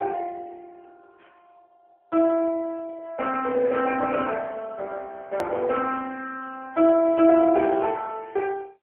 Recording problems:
phone line; 280 Hz to 3.4 kHz, AMR-NB
hard cut with a click; at 5.5 s

